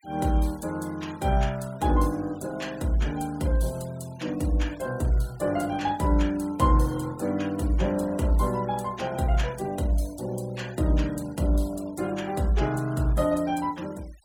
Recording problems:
denoising artefacts; signal-to-artefact ratio 22 dB

